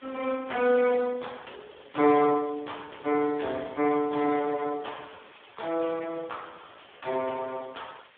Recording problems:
telephone audio; 260 Hz to 3.6 kHz, Speex
hiss; SNR 26 dB

